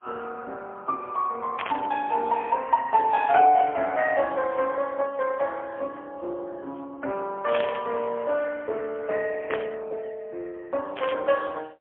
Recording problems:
telephone audio; 320 Hz to 2.8 kHz, AMR-NB, then MP3
burst of static; 4 times, first at 1.5 s; peak -2 dB vs average level

